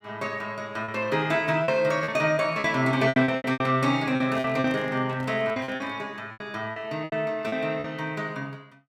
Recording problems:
packet loss; 11% of the sound replaced, filled with repeated pitch periods
handling noise; from 4 to 6 s; peak -11 dB vs average level

